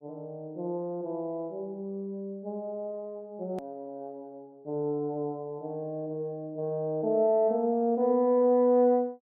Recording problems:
hard cut with a click; at 3.5 s

